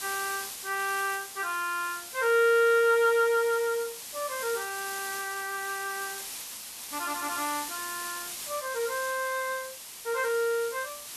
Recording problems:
background hiss; slope +2 dB per octave, SNR 9 dB

